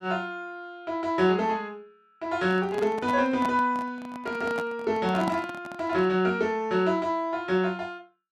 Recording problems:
handling noise; from 2.5 to 6 s; peak 0 dB vs average level

